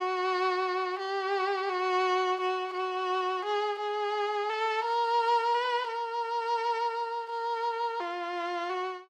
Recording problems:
none

